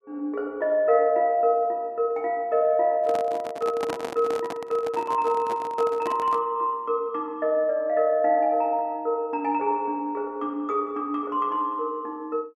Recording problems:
handling noise; from 3 to 6.5 s; peak -3 dB vs average level

